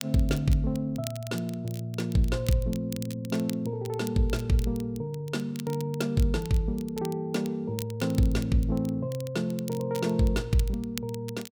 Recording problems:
crackle; vinyl, SNR 17 dB

